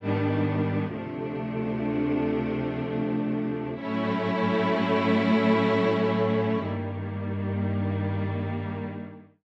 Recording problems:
none

